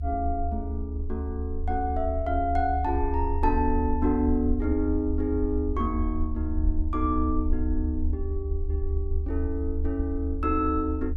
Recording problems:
low-frequency rumble; below 76 Hz, SNR 2 dB

